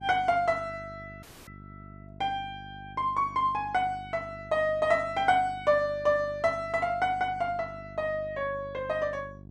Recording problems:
hum; 50 Hz, harmonics up to 700 Hz, SNR 19 dB
dropout; at 1 s

